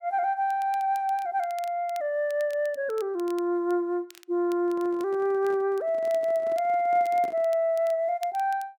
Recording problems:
crackling; vinyl, SNR 26 dB
microphone handling noise; from 4.5 to 7.5 s; peak -11 dB vs average level

